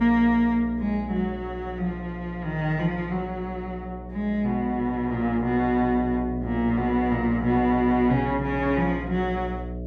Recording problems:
electrical hum; 60 Hz, harmonics up to 660 Hz, SNR 11 dB

